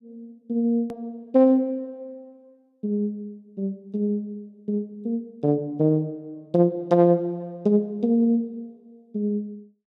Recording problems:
edit click; at 1 s

